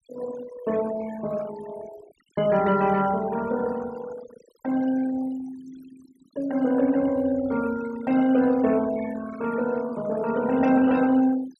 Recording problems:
noise reduction artefacts; signal-to-artefact ratio 17 dB

